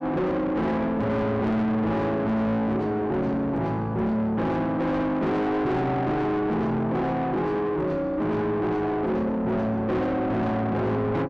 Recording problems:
distorted audio; soft clipping, signal-to-distortion ratio 7 dB

